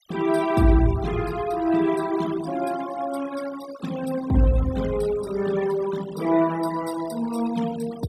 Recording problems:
noise reduction artefacts; signal-to-artefact ratio 16 dB

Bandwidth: 14.5 kHz